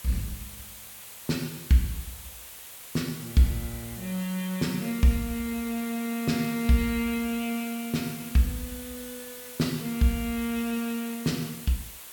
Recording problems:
background hiss; slope 0 dB per octave, SNR 12 dB

